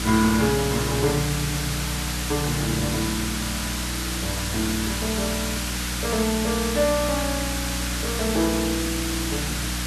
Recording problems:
hum; 60 Hz, harmonics up to 300 Hz, SNR 5 dB
background hiss; slope 0 dB per octave, SNR 1 dB

